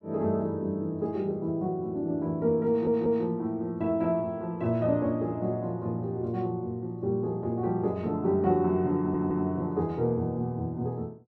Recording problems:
stutter; at 2.5 s and at 9 s

